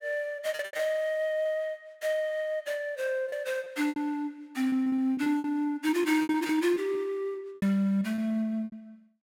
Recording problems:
packet loss; 11% of the sound replaced, filled with repeated pitch periods

